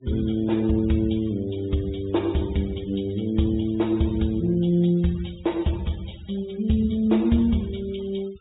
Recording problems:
treble missing; nothing above 4 kHz
denoising artefacts; signal-to-artefact ratio 25 dB

